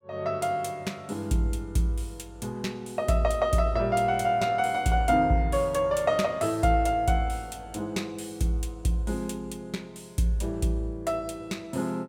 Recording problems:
none

